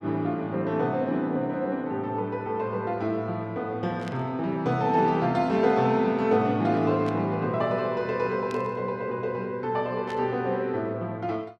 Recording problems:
static burst; 4 times, first at 4 s; peak -12 dB vs average level

